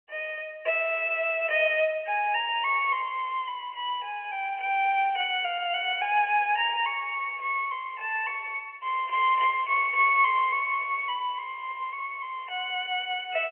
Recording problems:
phone line; 320 Hz to 3.1 kHz, G.711

